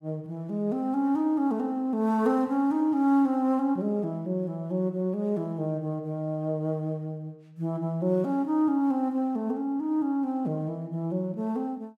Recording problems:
none

